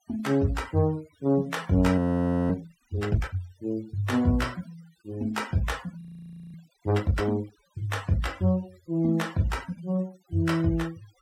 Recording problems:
noise reduction artefacts; signal-to-artefact ratio 22 dB
audio freezing; at 2 s for 0.5 s and at 6 s for 0.5 s

